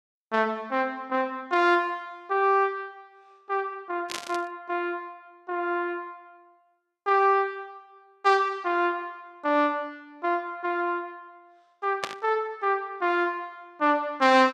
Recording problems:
burst of static; at 4 s and at 12 s; peak 0 dB vs average level

